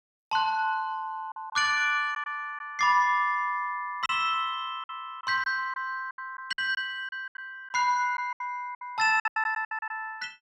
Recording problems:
lost packets; 9% of the sound replaced, filled with silence

